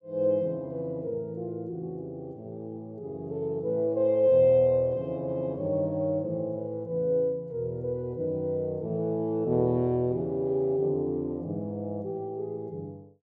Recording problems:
none

